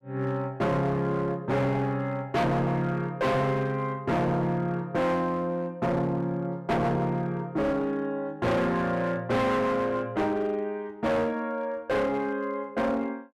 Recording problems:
distortion; hard clipping, uneven, signal-to-distortion ratio 7 dB

